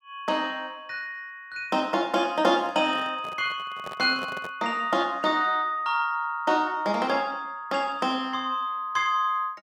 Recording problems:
microphone handling noise; from 2.5 to 4.5 s; peak -8 dB vs average level

